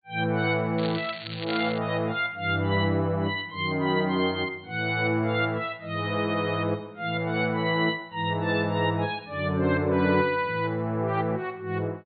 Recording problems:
low-pass filter; nothing above 4.6 kHz
crackle; from 1 to 2 s; loose cable, SNR 11 dB

